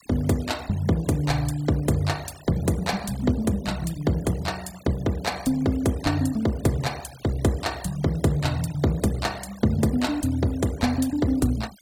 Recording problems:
denoising artefacts; signal-to-artefact ratio 19 dB

